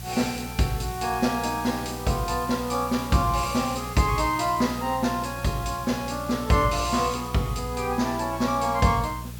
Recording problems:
hum; 60 Hz, harmonics up to 600 Hz, SNR 13 dB
hiss; SNR 16 dB

